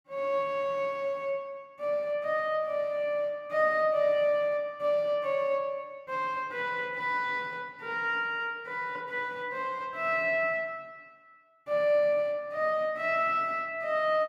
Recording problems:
none

